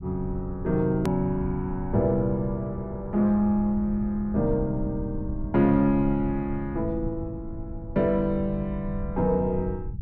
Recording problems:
low-frequency rumble; below 98 Hz, SNR 11 dB
hard cut with a click; at 1 s

